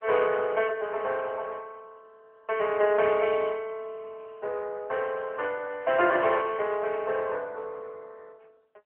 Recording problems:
phone line; 320 Hz to 3.1 kHz, AMR-NB

